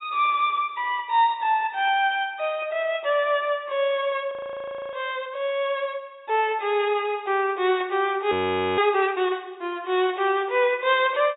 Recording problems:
treble cut off; nothing above 4 kHz
frozen audio; at 4.5 s for 0.5 s and at 8.5 s

